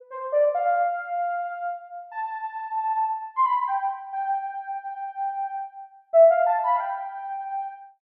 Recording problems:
none

